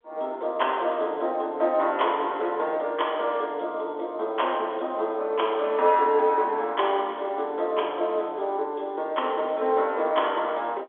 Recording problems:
telephone audio; 320 Hz to 3.4 kHz, G.711

